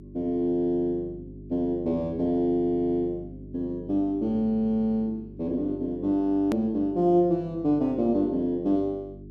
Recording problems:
hum; 50 Hz, harmonics up to 400 Hz, SNR 18 dB
hard cut with a click; at 6.5 s

